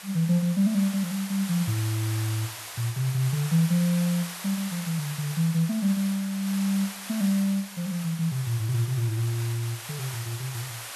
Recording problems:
background hiss; SNR 10 dB

